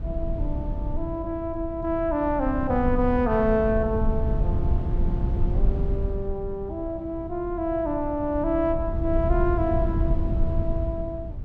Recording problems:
rumble; below 94 Hz, SNR 2 dB

